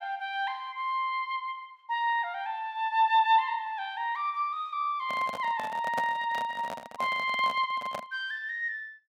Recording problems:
handling noise; from 5 to 8 s; peak -1 dB vs average level

